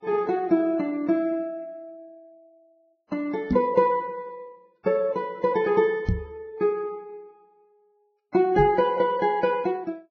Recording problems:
lossy codec; Vorbis, log-spectral distance 2 dB, nothing above 6.2 kHz
microphone bump; at 3.5 s, at 6 s and at 8.5 s; peak +4 dB vs average level

